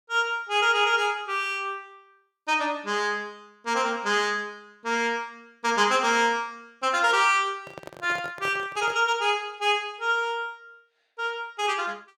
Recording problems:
handling noise; from 7.5 to 9 s; peak -9 dB vs average level

